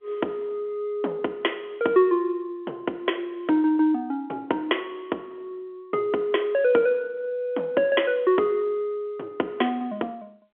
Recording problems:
phone line; 260 Hz to 3.4 kHz, G.711

